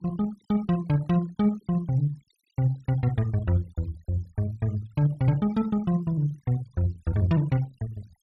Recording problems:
noise reduction artefacts; signal-to-artefact ratio 26 dB

